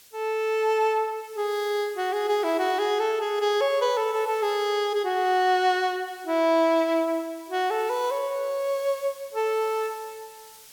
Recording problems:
background hiss; slope +2 dB per octave, SNR 23 dB

